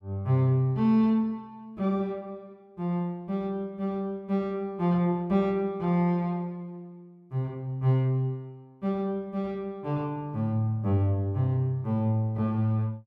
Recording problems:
none

